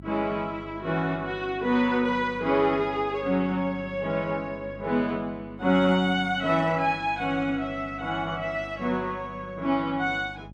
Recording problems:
hum; 50 Hz, harmonics up to 600 Hz, SNR 19 dB

